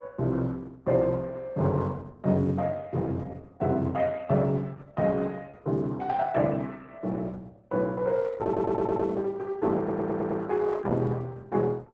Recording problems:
lossy compression; Opus, log-spectral distance 3 dB, nothing above 7.8 kHz
stutter; at 8.5 s and at 10 s

